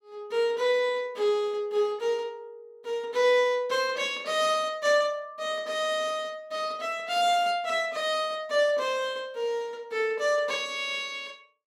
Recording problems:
none

